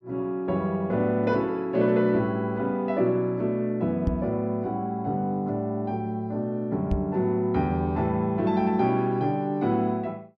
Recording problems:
microphone thump; at 4 s and at 7 s; peak +4 dB vs average level

